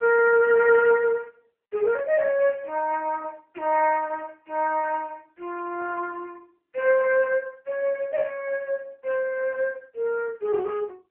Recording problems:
phone line; 370 Hz to 2.6 kHz, AMR-NB

